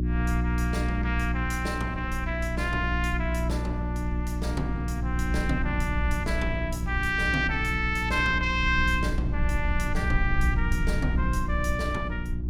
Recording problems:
hum; 60 Hz, harmonics up to 360 Hz, SNR 1 dB
rumble; below 70 Hz, SNR 6 dB

